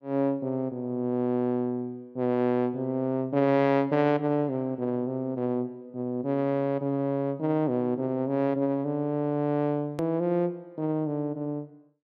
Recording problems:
edit click; at 10 s

